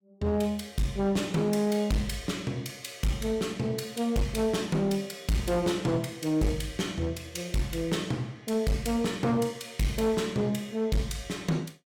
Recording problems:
distorted audio; hard clipping, uneven, signal-to-distortion ratio 11 dB

